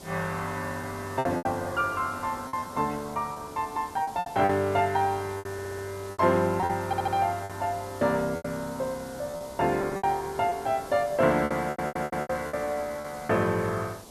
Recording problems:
hiss; SNR 17 dB
packet loss; 9% of the sound replaced, filled with repeated pitch periods
audio stuttering; at 5.5 s, at 7 s and at 12 s

